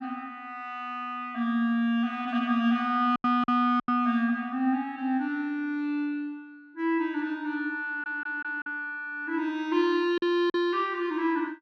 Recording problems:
lost packets; 3% of the sound replaced, filled with silence
audio stuttering; at 8 s

